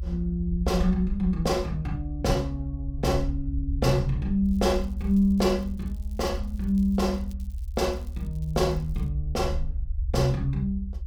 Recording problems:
rumble; below 70 Hz, SNR 6 dB
crackling; from 4.5 to 9 s; loose cable, SNR 30 dB

